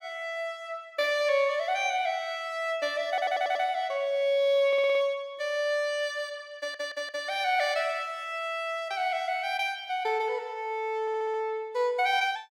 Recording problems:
stutter; 4 times, first at 3 s

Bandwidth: 16.5 kHz